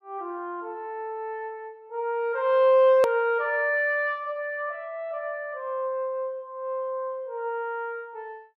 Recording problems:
hard cut with a click; at 3 s

